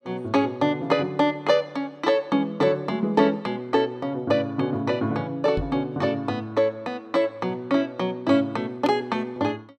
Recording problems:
knock on the microphone; at 5.5 s; peak -2 dB vs average level

